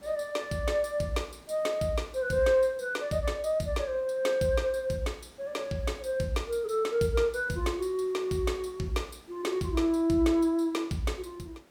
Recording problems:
background hiss; slope -5 dB per octave, SNR 27 dB

